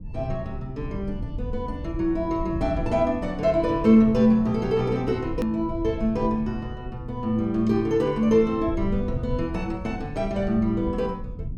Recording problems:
rumble; below 110 Hz, SNR 12 dB
click at an edit; at 5.5 s

